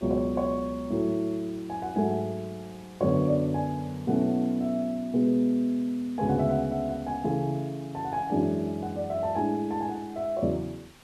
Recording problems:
hiss; slope -2 dB per octave, SNR 24 dB

